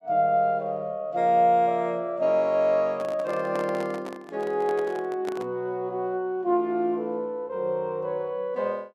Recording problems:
handling noise; from 3 to 5.5 s; peak -6 dB vs average level

